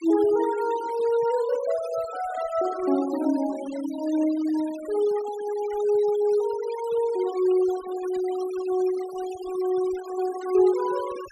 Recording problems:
noise reduction artefacts; signal-to-artefact ratio 17 dB

